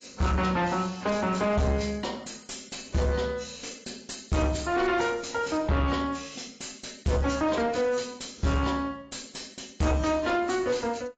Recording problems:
lossy compression; AAC, log-spectral distance 8 dB, nothing above 7.6 kHz
distorted audio; soft clipping, signal-to-distortion ratio 5 dB

